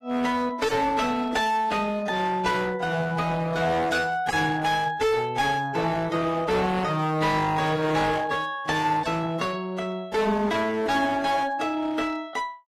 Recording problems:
codec artefacts; AAC, then AAC, log-spectral distance 3 dB, nothing above 12.3 kHz
distortion; hard clipping, signal-to-distortion ratio 8 dB

